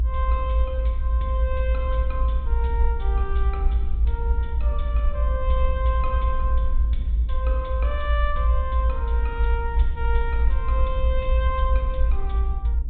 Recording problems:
treble cut off; nothing above 4 kHz
rumble; below 60 Hz, strongest tone 56 Hz, SNR -7 dB

